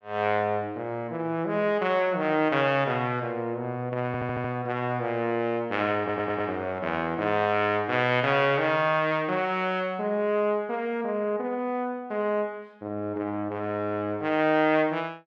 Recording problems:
stutter; at 4 s and at 6 s

